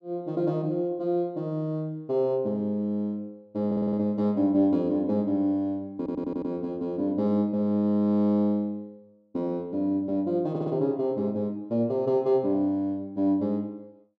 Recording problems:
stutter; at 3.5 s, at 6 s and at 11 s

